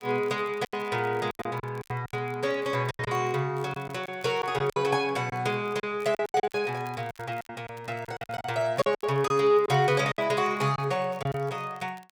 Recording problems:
crackle; vinyl, SNR 28 dB
packet loss; 12% of the sound replaced, filled with silence

